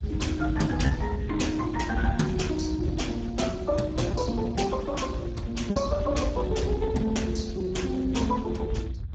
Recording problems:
lossy codec; Speex, log-spectral distance 2 dB, nothing above 7.3 kHz
rumble; below 140 Hz, SNR 6 dB
packet loss; 1.8% of the sound replaced, filled with repeated pitch periods

